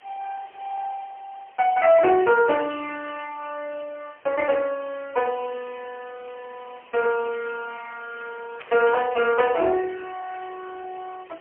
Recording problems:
phone line; 320 Hz to 3 kHz, AMR-NB, then MP3
background hiss; SNR 28 dB
static burst; at 3 s, at 7 s and at 8.5 s; peak -12 dB vs average level

